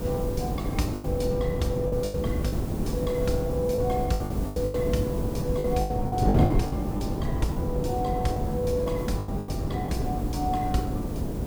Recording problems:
hum; 50 Hz, harmonics up to 500 Hz, SNR 8 dB
background hiss; slope -1 dB per octave, SNR 17 dB
wind noise; below 320 Hz, SNR -1 dB
packet loss; 10% of the sound replaced, filled with the last packet

